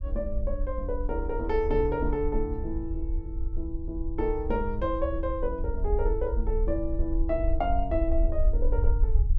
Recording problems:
low-frequency rumble; below 54 Hz, SNR 1 dB

